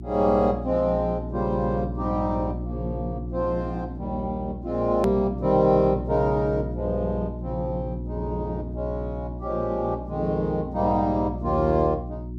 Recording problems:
electrical hum; 60 Hz, harmonics up to 360 Hz, SNR 8 dB
edit click; at 5 s

